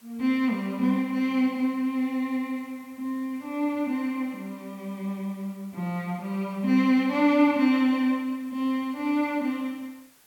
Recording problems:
hiss; slope -1 dB per octave, SNR 29 dB

